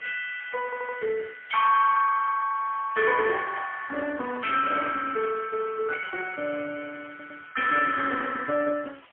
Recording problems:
telephone audio; 320 Hz to 3 kHz, AMR-NB, then MP3
background hiss; SNR 27 dB
audio stuttering; at 0.5 s and at 7 s

